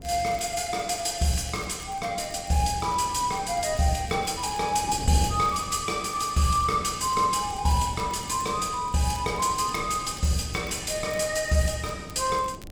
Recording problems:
wind noise; below 310 Hz, SNR 16 dB
crackling; vinyl, SNR 25 dB

